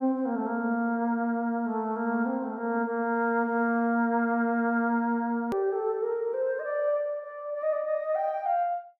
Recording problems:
edit click; at 5.5 s

